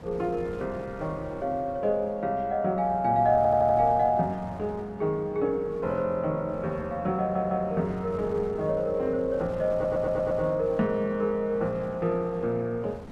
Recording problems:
wind on the microphone; below 520 Hz, SNR 17 dB
stutter; at 3.5 s, at 7 s and at 9.5 s

